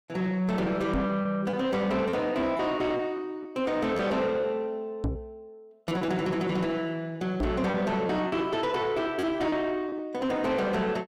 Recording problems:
distortion; soft clipping, signal-to-distortion ratio 10 dB
packet loss; 6% of the sound replaced, filled with repeated pitch periods
knock on the microphone; at 1 s, at 5 s and at 7.5 s; peak +3 dB vs average level

